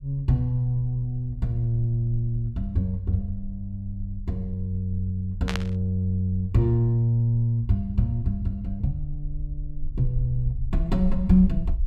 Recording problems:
low-frequency rumble; below 52 Hz, SNR 11 dB
burst of static; at 5.5 s; peak -1 dB vs average level

